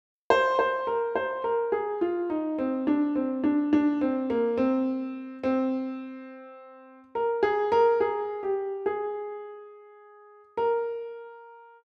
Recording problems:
none

